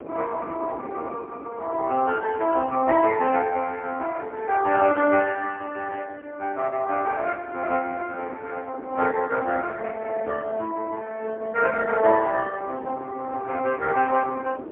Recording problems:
phone line; 240 Hz to 3.1 kHz, AMR-NB, then MP3
wind noise; below 530 Hz, SNR 16 dB

